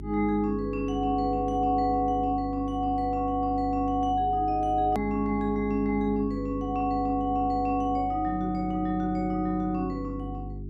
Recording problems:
hum; 50 Hz, harmonics up to 400 Hz, SNR 11 dB
hard cut with a click; at 5 s

